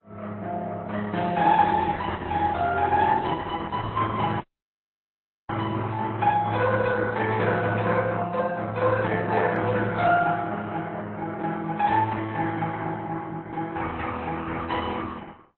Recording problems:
codec artefacts; Opus, then AAC, log-spectral distance 4 dB
dropout; at 4.5 s for 1 s

